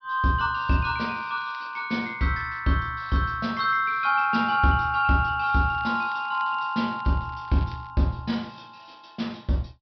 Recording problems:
low-pass filter; nothing above 5.5 kHz
crackling; at 1 s and from 5.5 to 8 s; loose cable, SNR 29 dB

